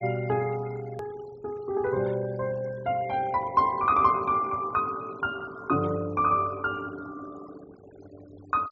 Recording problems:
treble missing; nothing above 7.5 kHz
denoising artefacts; signal-to-artefact ratio 22 dB
edit click; at 1 s

